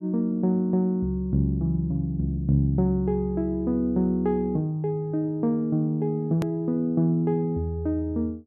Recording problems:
click at an edit; at 6.5 s

